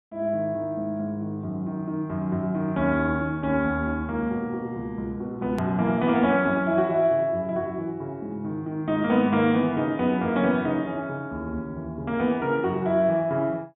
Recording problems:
treble missing; nothing above 4 kHz
hard cut with a click; at 5.5 s

